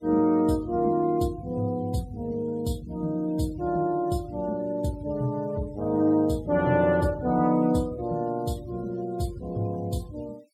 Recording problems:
noise reduction artefacts; signal-to-artefact ratio 26 dB

